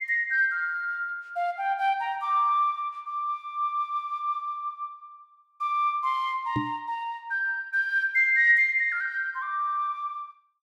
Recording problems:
microphone bump; at 6.5 s; peak +1 dB vs average level

